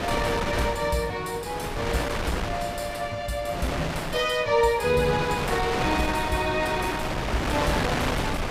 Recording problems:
wind noise; below 1.9 kHz, SNR 3 dB

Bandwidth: 15.5 kHz